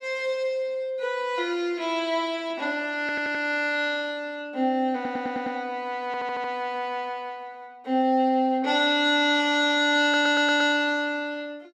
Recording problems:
audio stuttering; 4 times, first at 3 s

